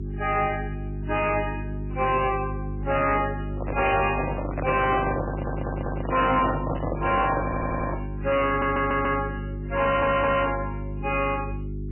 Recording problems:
codec artefacts; AAC, then MP3, log-spectral distance 4 dB, nothing above 2.6 kHz
distortion; hard clipping, signal-to-distortion ratio 10 dB
electrical hum; 50 Hz, harmonics up to 400 Hz, SNR 7 dB
handling noise; from 3.5 to 8 s; peak +1 dB vs average level
stutter; 4 times, first at 5.5 s

